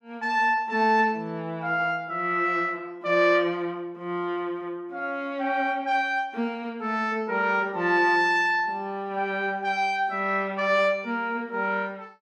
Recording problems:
none

